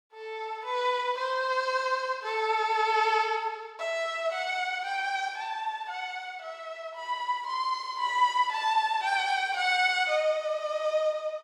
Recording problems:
none

